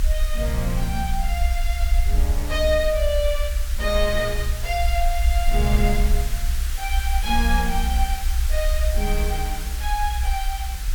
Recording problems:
background hiss; SNR 8 dB
rumble; below 62 Hz, strongest tone 28 Hz, SNR -1 dB

